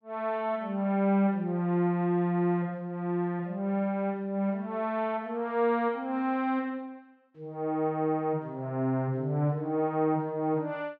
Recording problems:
none

